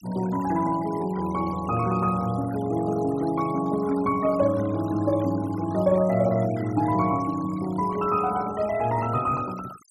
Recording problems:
noise reduction artefacts; signal-to-artefact ratio 19 dB

